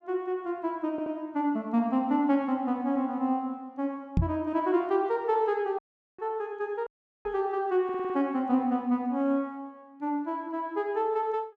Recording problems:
stutter; at 1 s and at 8 s
knock on the microphone; at 4 s and at 7.5 s; peak +7 dB vs average level
dropout; at 6 s and at 7 s

